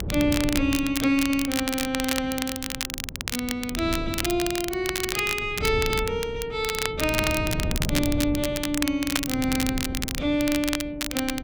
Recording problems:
wind noise; below 210 Hz, SNR 8 dB
crackle; vinyl, SNR 4 dB

